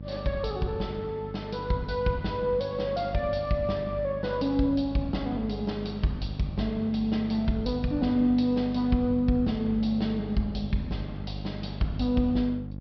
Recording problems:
treble missing; nothing above 5.5 kHz
electrical hum; 50 Hz, harmonics up to 600 Hz, SNR 10 dB

